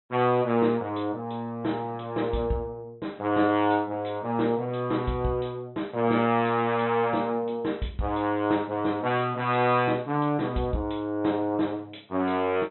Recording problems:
treble missing; nothing above 4 kHz

